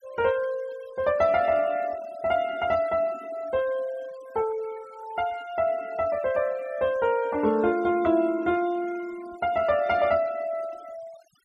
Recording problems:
denoising artefacts; signal-to-artefact ratio 22 dB

